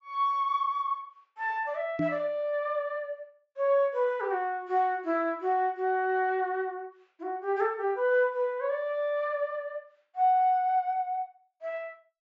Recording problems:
treble cut off; nothing above 8 kHz
microphone thump; at 2 s; peak +2 dB vs average level

